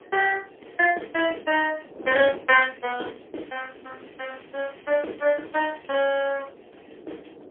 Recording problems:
telephone audio; 280 Hz to 3.2 kHz, AMR-NB, then MP3
wind on the microphone; below 530 Hz, SNR 19 dB
crackling; from 3.5 to 6.5 s; loose cable, SNR 30 dB

